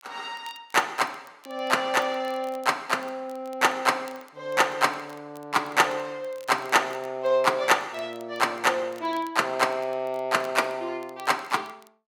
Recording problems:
crackle; vinyl, SNR 29 dB

